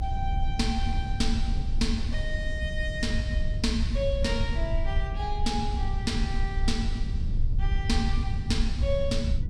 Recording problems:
rumble; below 72 Hz, strongest tone 24 Hz, SNR -1 dB
wind noise; below 280 Hz, SNR 14 dB

